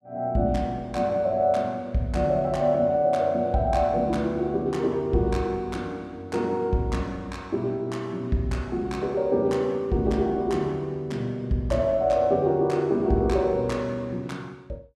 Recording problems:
none

